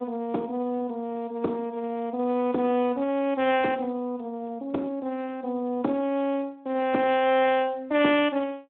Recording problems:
telephone audio; 190 Hz to 3.5 kHz, Speex

